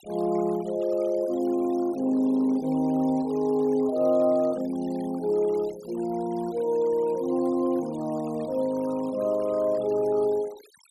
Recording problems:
noise reduction artefacts; signal-to-artefact ratio 23 dB

